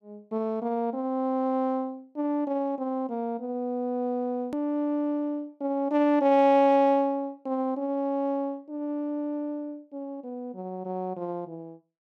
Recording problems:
hard cut with a click; at 4.5 s

